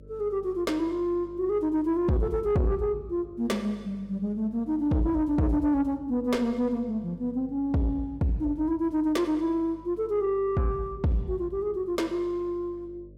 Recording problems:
distorted audio; soft clipping, signal-to-distortion ratio 12 dB
hum; 50 Hz, harmonics up to 600 Hz, SNR 23 dB

